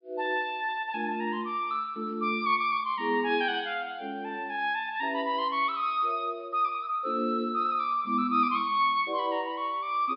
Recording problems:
treble missing; nothing above 5.5 kHz

